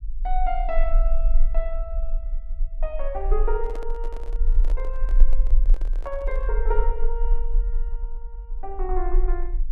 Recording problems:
low-frequency rumble; below 34 Hz, strongest tone 18 Hz, SNR -5 dB
microphone handling noise; from 3.5 to 6.5 s; peak -5 dB vs average level

